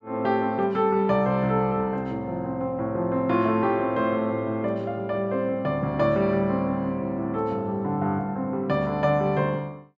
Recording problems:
none

